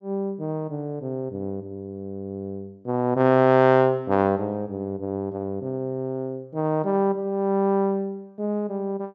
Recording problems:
treble missing; nothing above 8 kHz

